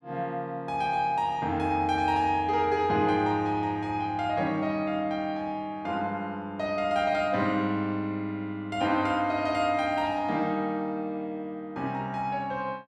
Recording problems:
none

